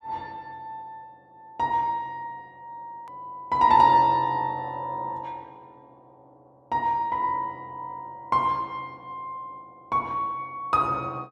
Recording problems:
hard cut with a click; at 3 s

